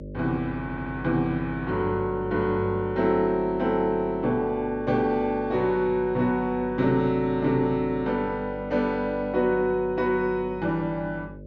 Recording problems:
low-pass filter; nothing above 8 kHz
hum; 50 Hz, harmonics up to 600 Hz, SNR 15 dB
stutter; at 0.5 s

